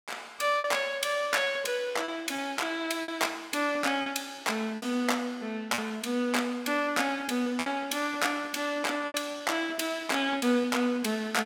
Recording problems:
lost packets; 6% of the sound replaced, filled with repeated pitch periods

